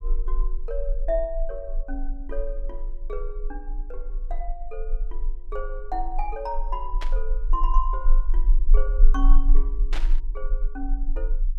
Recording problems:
rumble; below 34 Hz, strongest tone 22 Hz, SNR -6 dB
burst of static; at 7 s and at 10 s; peak +3 dB vs average level

